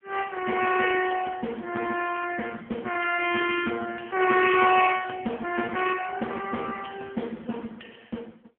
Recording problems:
phone line; 240 Hz to 3.1 kHz, AMR-NB

